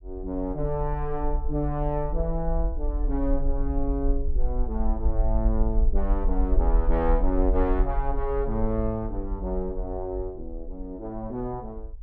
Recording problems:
low-frequency rumble; below 48 Hz, SNR 0 dB

